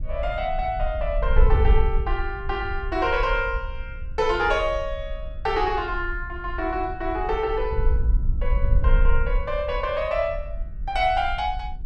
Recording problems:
wind noise; below 58 Hz, SNR 3 dB

